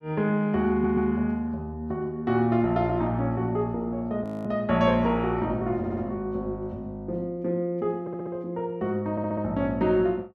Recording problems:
stutter; 4 times, first at 0.5 s
audio freezing; at 4 s

